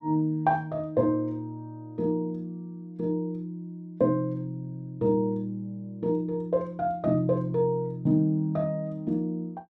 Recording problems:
none

